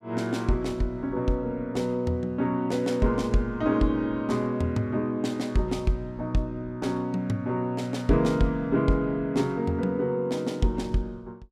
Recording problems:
none

